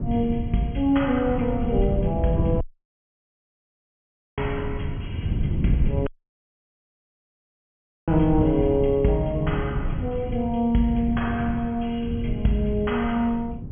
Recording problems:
treble cut off; nothing above 3.3 kHz
wind on the microphone; below 160 Hz, SNR 5 dB
audio cutting out; at 2.5 s for 2 s and at 6 s for 2 s

